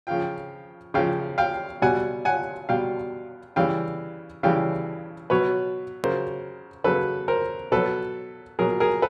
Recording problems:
edit click; at 6 s

